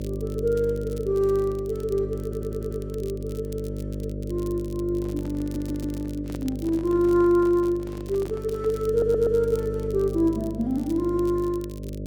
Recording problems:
hum; 50 Hz, harmonics up to 600 Hz, SNR 8 dB
crackle; vinyl, SNR 24 dB
stutter; at 2 s, at 5.5 s and at 9 s
handling noise; from 5 to 9 s; peak -9 dB vs average level

